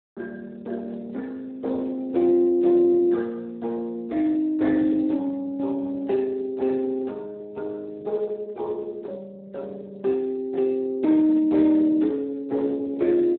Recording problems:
phone line; 260 Hz to 2.6 kHz, Speex

